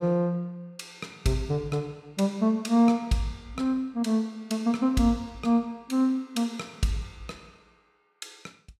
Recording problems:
none

